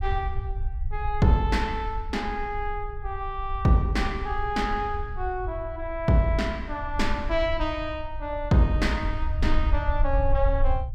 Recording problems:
rumble; below 62 Hz, strongest tone 20 Hz, SNR 6 dB

